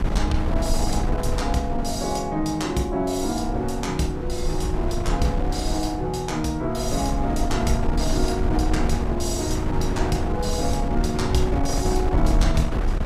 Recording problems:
wind on the microphone; below 98 Hz, SNR 2 dB

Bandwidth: 15 kHz